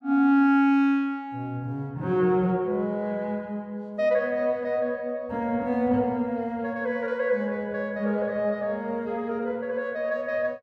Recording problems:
none

